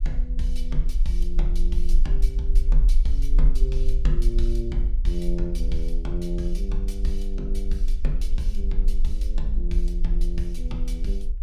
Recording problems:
low-frequency rumble; below 40 Hz, strongest tone 20 Hz, SNR -6 dB

